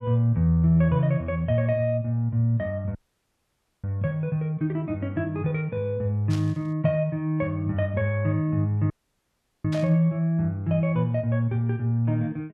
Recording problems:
dropout; at 3 s for 1 s and at 9 s for 0.5 s
static burst; at 6.5 s and at 9.5 s; peak -10 dB vs average level

